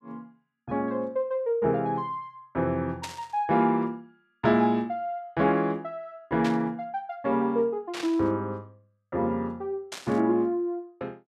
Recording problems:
static burst; 4 times, first at 3 s; peak -4 dB vs average level

